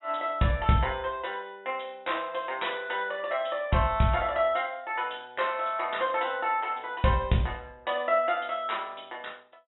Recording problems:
treble missing; nothing above 3.9 kHz

